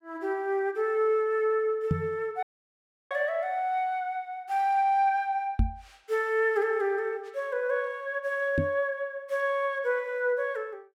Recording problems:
microphone bump; at 2 s, at 5.5 s and at 8.5 s; peak +5 dB vs average level
dropout; at 2.5 s for 0.5 s

